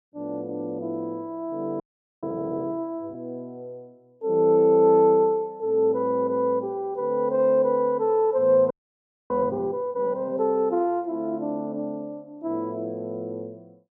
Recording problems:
frozen audio; at 2 s and at 8.5 s for 0.5 s

